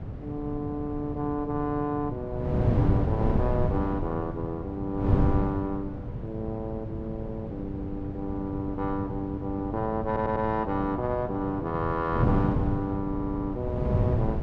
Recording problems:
wind on the microphone; below 210 Hz, SNR 0 dB
audio stuttering; at 10 s and at 13 s

